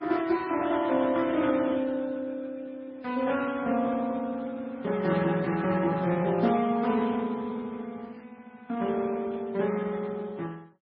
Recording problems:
lossy compression; Speex, then MP3, log-spectral distance 3 dB, nothing above 5.3 kHz

